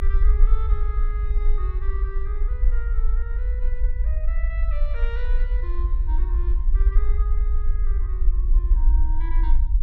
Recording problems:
rumble; below 50 Hz, SNR -17 dB

